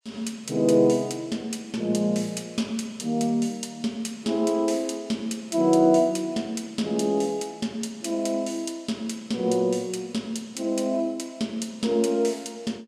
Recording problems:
none

